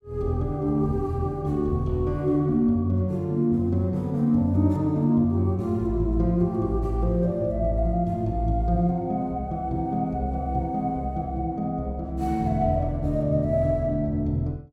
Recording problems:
none

